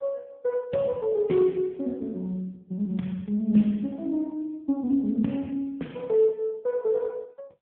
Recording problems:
phone line; 110 Hz to 3.6 kHz, AMR-NB

